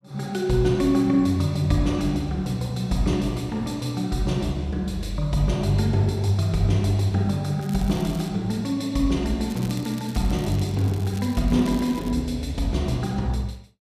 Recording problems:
crackling; at 7.5 s and from 9.5 to 12 s; loose cable, SNR 20 dB

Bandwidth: 14.5 kHz